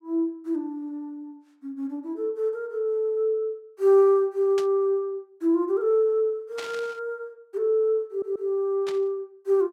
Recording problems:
burst of static; at 4.5 s, at 6.5 s and at 9 s; peak -7 dB vs average level
audio stuttering; at 8 s

